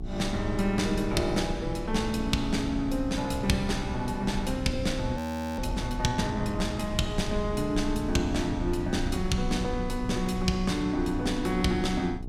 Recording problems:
hum; 60 Hz, harmonics up to 840 Hz, SNR 12 dB
low-frequency rumble; below 80 Hz, strongest tone 28 Hz, SNR 10 dB
audio freezing; at 5 s

